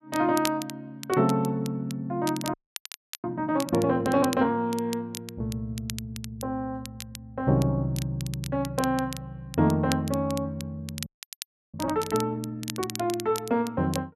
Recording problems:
crackling; vinyl, SNR 13 dB
frozen audio; at 2.5 s for 0.5 s and at 11 s for 0.5 s

